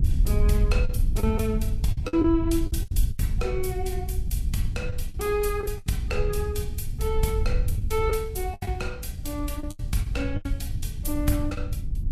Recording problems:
lossy compression; Vorbis, log-spectral distance 2 dB, nothing above 13.5 kHz
wind noise; below 82 Hz, SNR 0 dB
packet loss; 8% of the sound replaced, filled with the last packet

